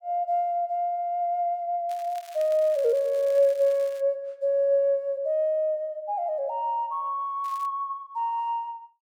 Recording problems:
crackling; from 2 to 4 s and at 7.5 s; loose cable, SNR 24 dB

